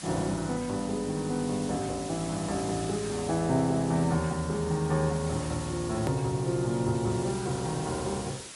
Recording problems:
codec artefacts; MP3, log-spectral distance 9 dB, nothing above 13.1 kHz
background hiss; slope 0 dB per octave, SNR 12 dB
hard cut with a click; at 6 s

